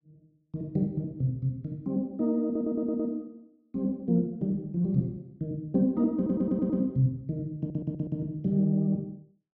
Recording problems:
stutter; at 2.5 s, at 6 s and at 7.5 s

